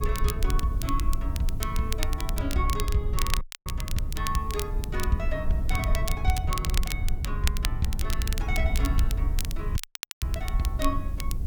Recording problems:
hiss; slope +3 dB per octave, SNR 27 dB
rumble; below 68 Hz, SNR -2 dB
crackling; vinyl, SNR 5 dB
dropout; at 3.5 s and at 10 s

